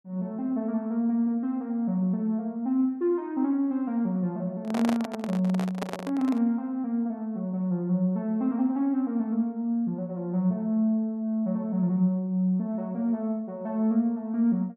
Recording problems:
handling noise; from 4.5 to 6.5 s; peak 0 dB vs average level

